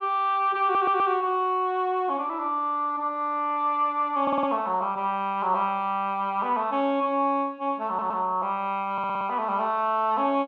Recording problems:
stutter; 4 times, first at 0.5 s

